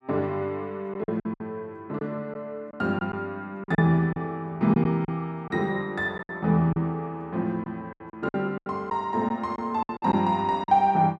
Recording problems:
packet loss; 9% of the sound replaced, filled with silence

